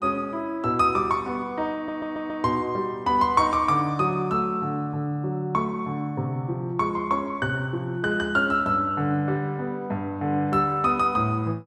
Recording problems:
stutter; at 1.5 s

